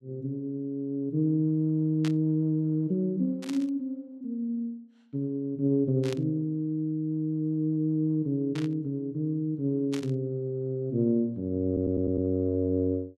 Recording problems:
static burst; 5 times, first at 2 s; peak -6 dB vs average level
stutter; at 12 s

